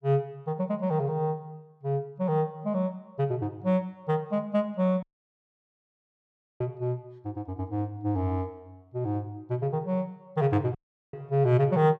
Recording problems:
dropout; at 5 s for 1.5 s and at 11 s

